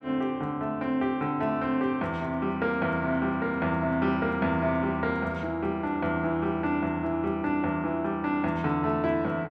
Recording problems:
none

